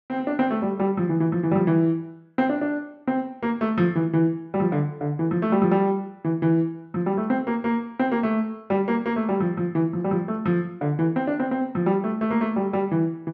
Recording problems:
none

